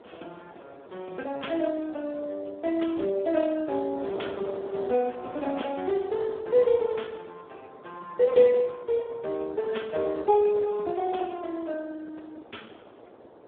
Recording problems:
phone line; 260 Hz to 3.5 kHz, Speex
wind on the microphone; below 730 Hz, SNR 19 dB

